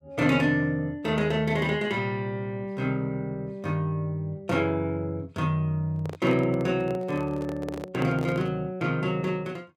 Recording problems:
microphone handling noise; from 6 to 8.5 s; peak -4 dB vs average level

